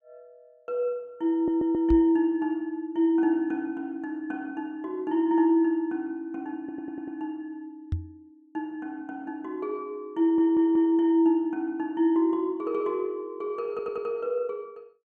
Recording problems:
audio stuttering; 4 times, first at 1.5 s
microphone thump; at 2 s and at 8 s; peak +2 dB vs average level

